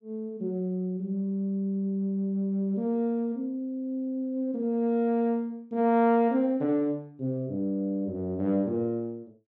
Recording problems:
none

